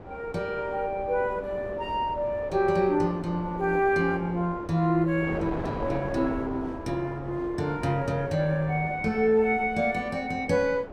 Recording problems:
wind on the microphone; below 670 Hz, SNR 12 dB

